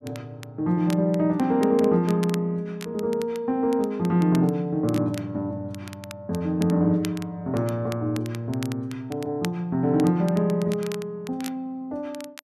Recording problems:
crackling; vinyl, SNR 19 dB

